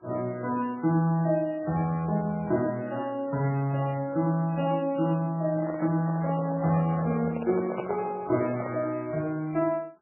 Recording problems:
lossy codec; MP3, then MP3, log-spectral distance 2 dB, nothing above 2.3 kHz
handling noise; from 5.5 to 9 s; peak 0 dB vs average level

